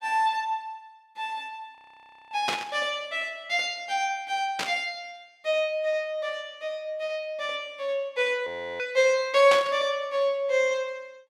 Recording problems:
audio freezing; at 2 s for 0.5 s and at 8.5 s
static burst; at 2.5 s, at 4.5 s and at 9.5 s; peak +3 dB vs average level

